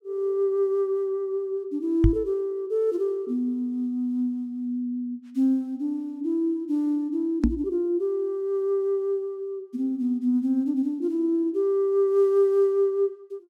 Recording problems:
microphone bump; at 2 s and at 7.5 s; peak +8 dB vs average level

